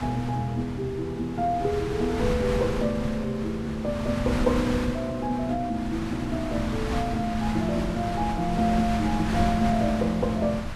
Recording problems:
wind noise; below 890 Hz, SNR 6 dB

